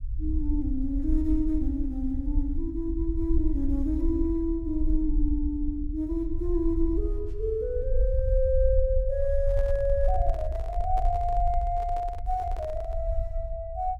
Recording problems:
rumble; below 56 Hz, SNR 2 dB
microphone handling noise; from 9.5 to 13 s; peak -10 dB vs average level

